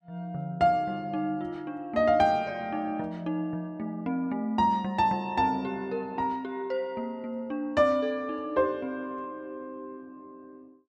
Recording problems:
none

